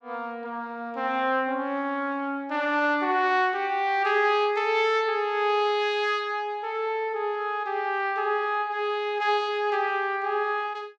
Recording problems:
none

